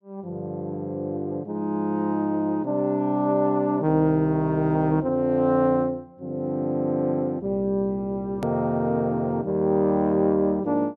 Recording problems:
hard cut with a click; at 8.5 s

